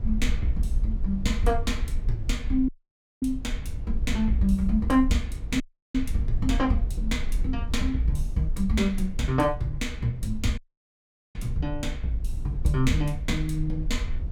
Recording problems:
rumble; below 56 Hz, SNR 5 dB
dropout; at 2.5 s for 0.5 s, at 5.5 s and at 11 s for 1 s

